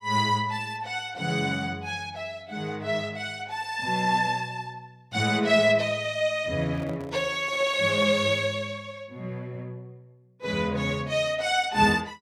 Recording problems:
microphone handling noise; from 6.5 to 8 s; peak -10 dB vs average level

